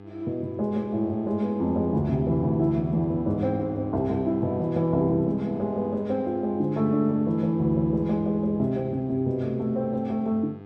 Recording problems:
hum; 50 Hz, harmonics up to 1.3 kHz, SNR 17 dB

